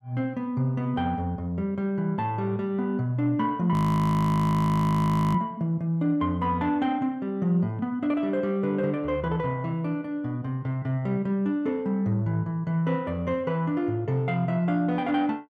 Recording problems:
frozen audio; at 3.5 s for 1.5 s

